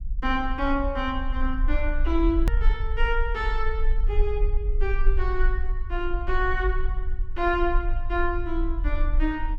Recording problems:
rumble; below 44 Hz, strongest tone 20 Hz, SNR 0 dB
click at an edit; at 2.5 s

